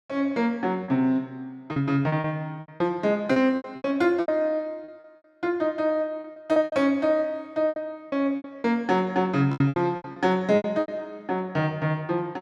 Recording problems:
lost packets; 13% of the sound replaced, filled with repeated pitch periods

